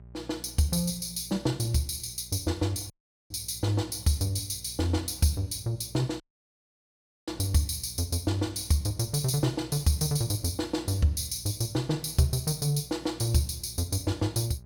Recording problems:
electrical hum; 60 Hz, harmonics up to 600 Hz, SNR 22 dB
audio cutting out; at 3 s and at 6 s for 1 s

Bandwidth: 17.5 kHz